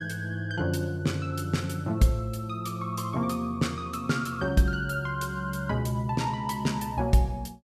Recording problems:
none

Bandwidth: 14.5 kHz